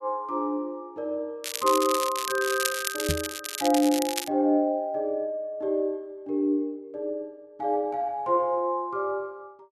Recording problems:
crackling; from 1.5 to 4.5 s; loose cable, SNR 4 dB
microphone thump; at 3 s; peak +1 dB vs average level

